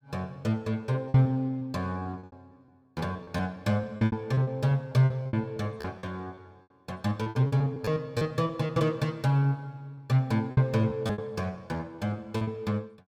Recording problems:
packet loss; 13% of the sound replaced, filled with repeated pitch periods

